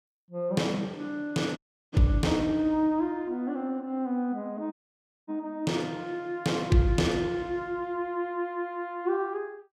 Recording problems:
audio cutting out; at 1.5 s and at 4.5 s for 0.5 s

